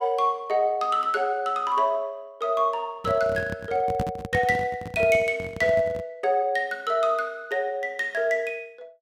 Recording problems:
handling noise; from 3 to 6 s; peak 0 dB vs average level

